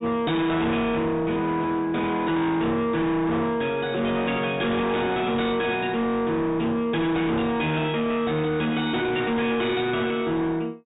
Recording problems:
low-pass filter; nothing above 4 kHz
distorted audio; hard clipping, uneven, signal-to-distortion ratio 7 dB

